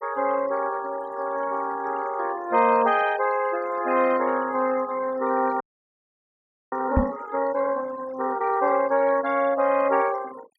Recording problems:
noise reduction artefacts; signal-to-artefact ratio 18 dB
frozen audio; at 5.5 s for 1 s
microphone thump; at 7 s; peak +6 dB vs average level

